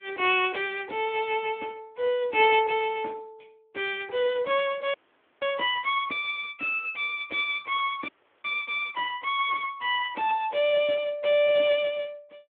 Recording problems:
phone line; 260 Hz to 3.5 kHz, Speex
frozen audio; at 5 s and at 8 s

